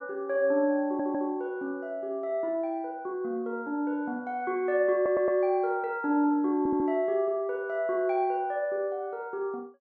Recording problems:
audio stuttering; at 1 s, at 5 s and at 6.5 s

